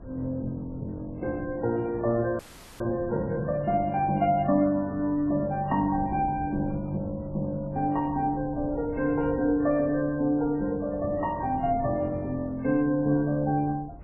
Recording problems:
lossy compression; MP3, then AAC, log-spectral distance 2 dB, nothing above 2.4 kHz
wind on the microphone; below 240 Hz, SNR 17 dB
frozen audio; at 2.5 s

